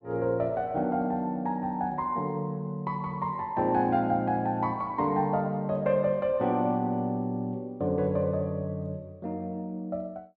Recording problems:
none

